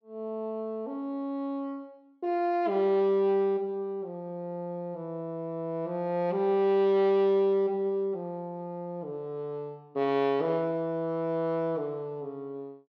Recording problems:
none

